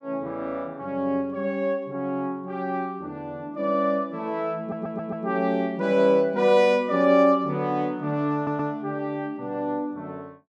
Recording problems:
audio stuttering; at 4.5 s and at 8.5 s

